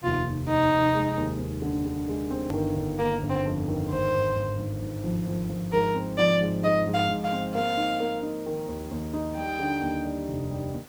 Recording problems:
background hiss; slope -3 dB per octave, SNR 21 dB
hard cut with a click; at 2.5 s

